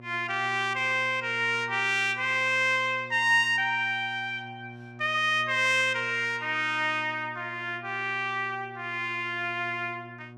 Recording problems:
hum; 60 Hz, harmonics up to 1.4 kHz, SNR 21 dB

